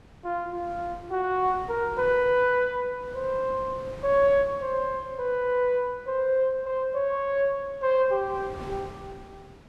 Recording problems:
wind on the microphone; below 680 Hz, SNR 20 dB

